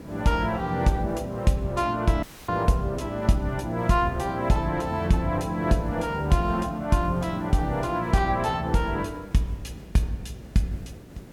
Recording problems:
background hiss; SNR 19 dB
audio cutting out; at 2 s

